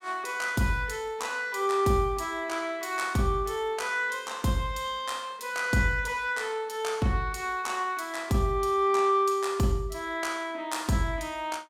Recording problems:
none

